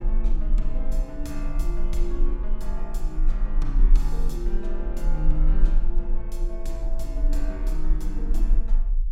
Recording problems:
rumble; below 34 Hz, strongest tone 26 Hz, SNR -8 dB

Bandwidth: 16 kHz